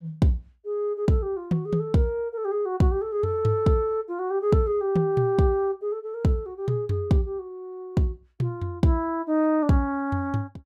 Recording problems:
none

